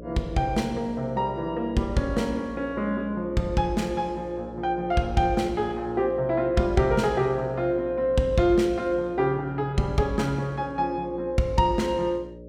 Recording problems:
electrical hum; 60 Hz, harmonics up to 600 Hz, SNR 15 dB

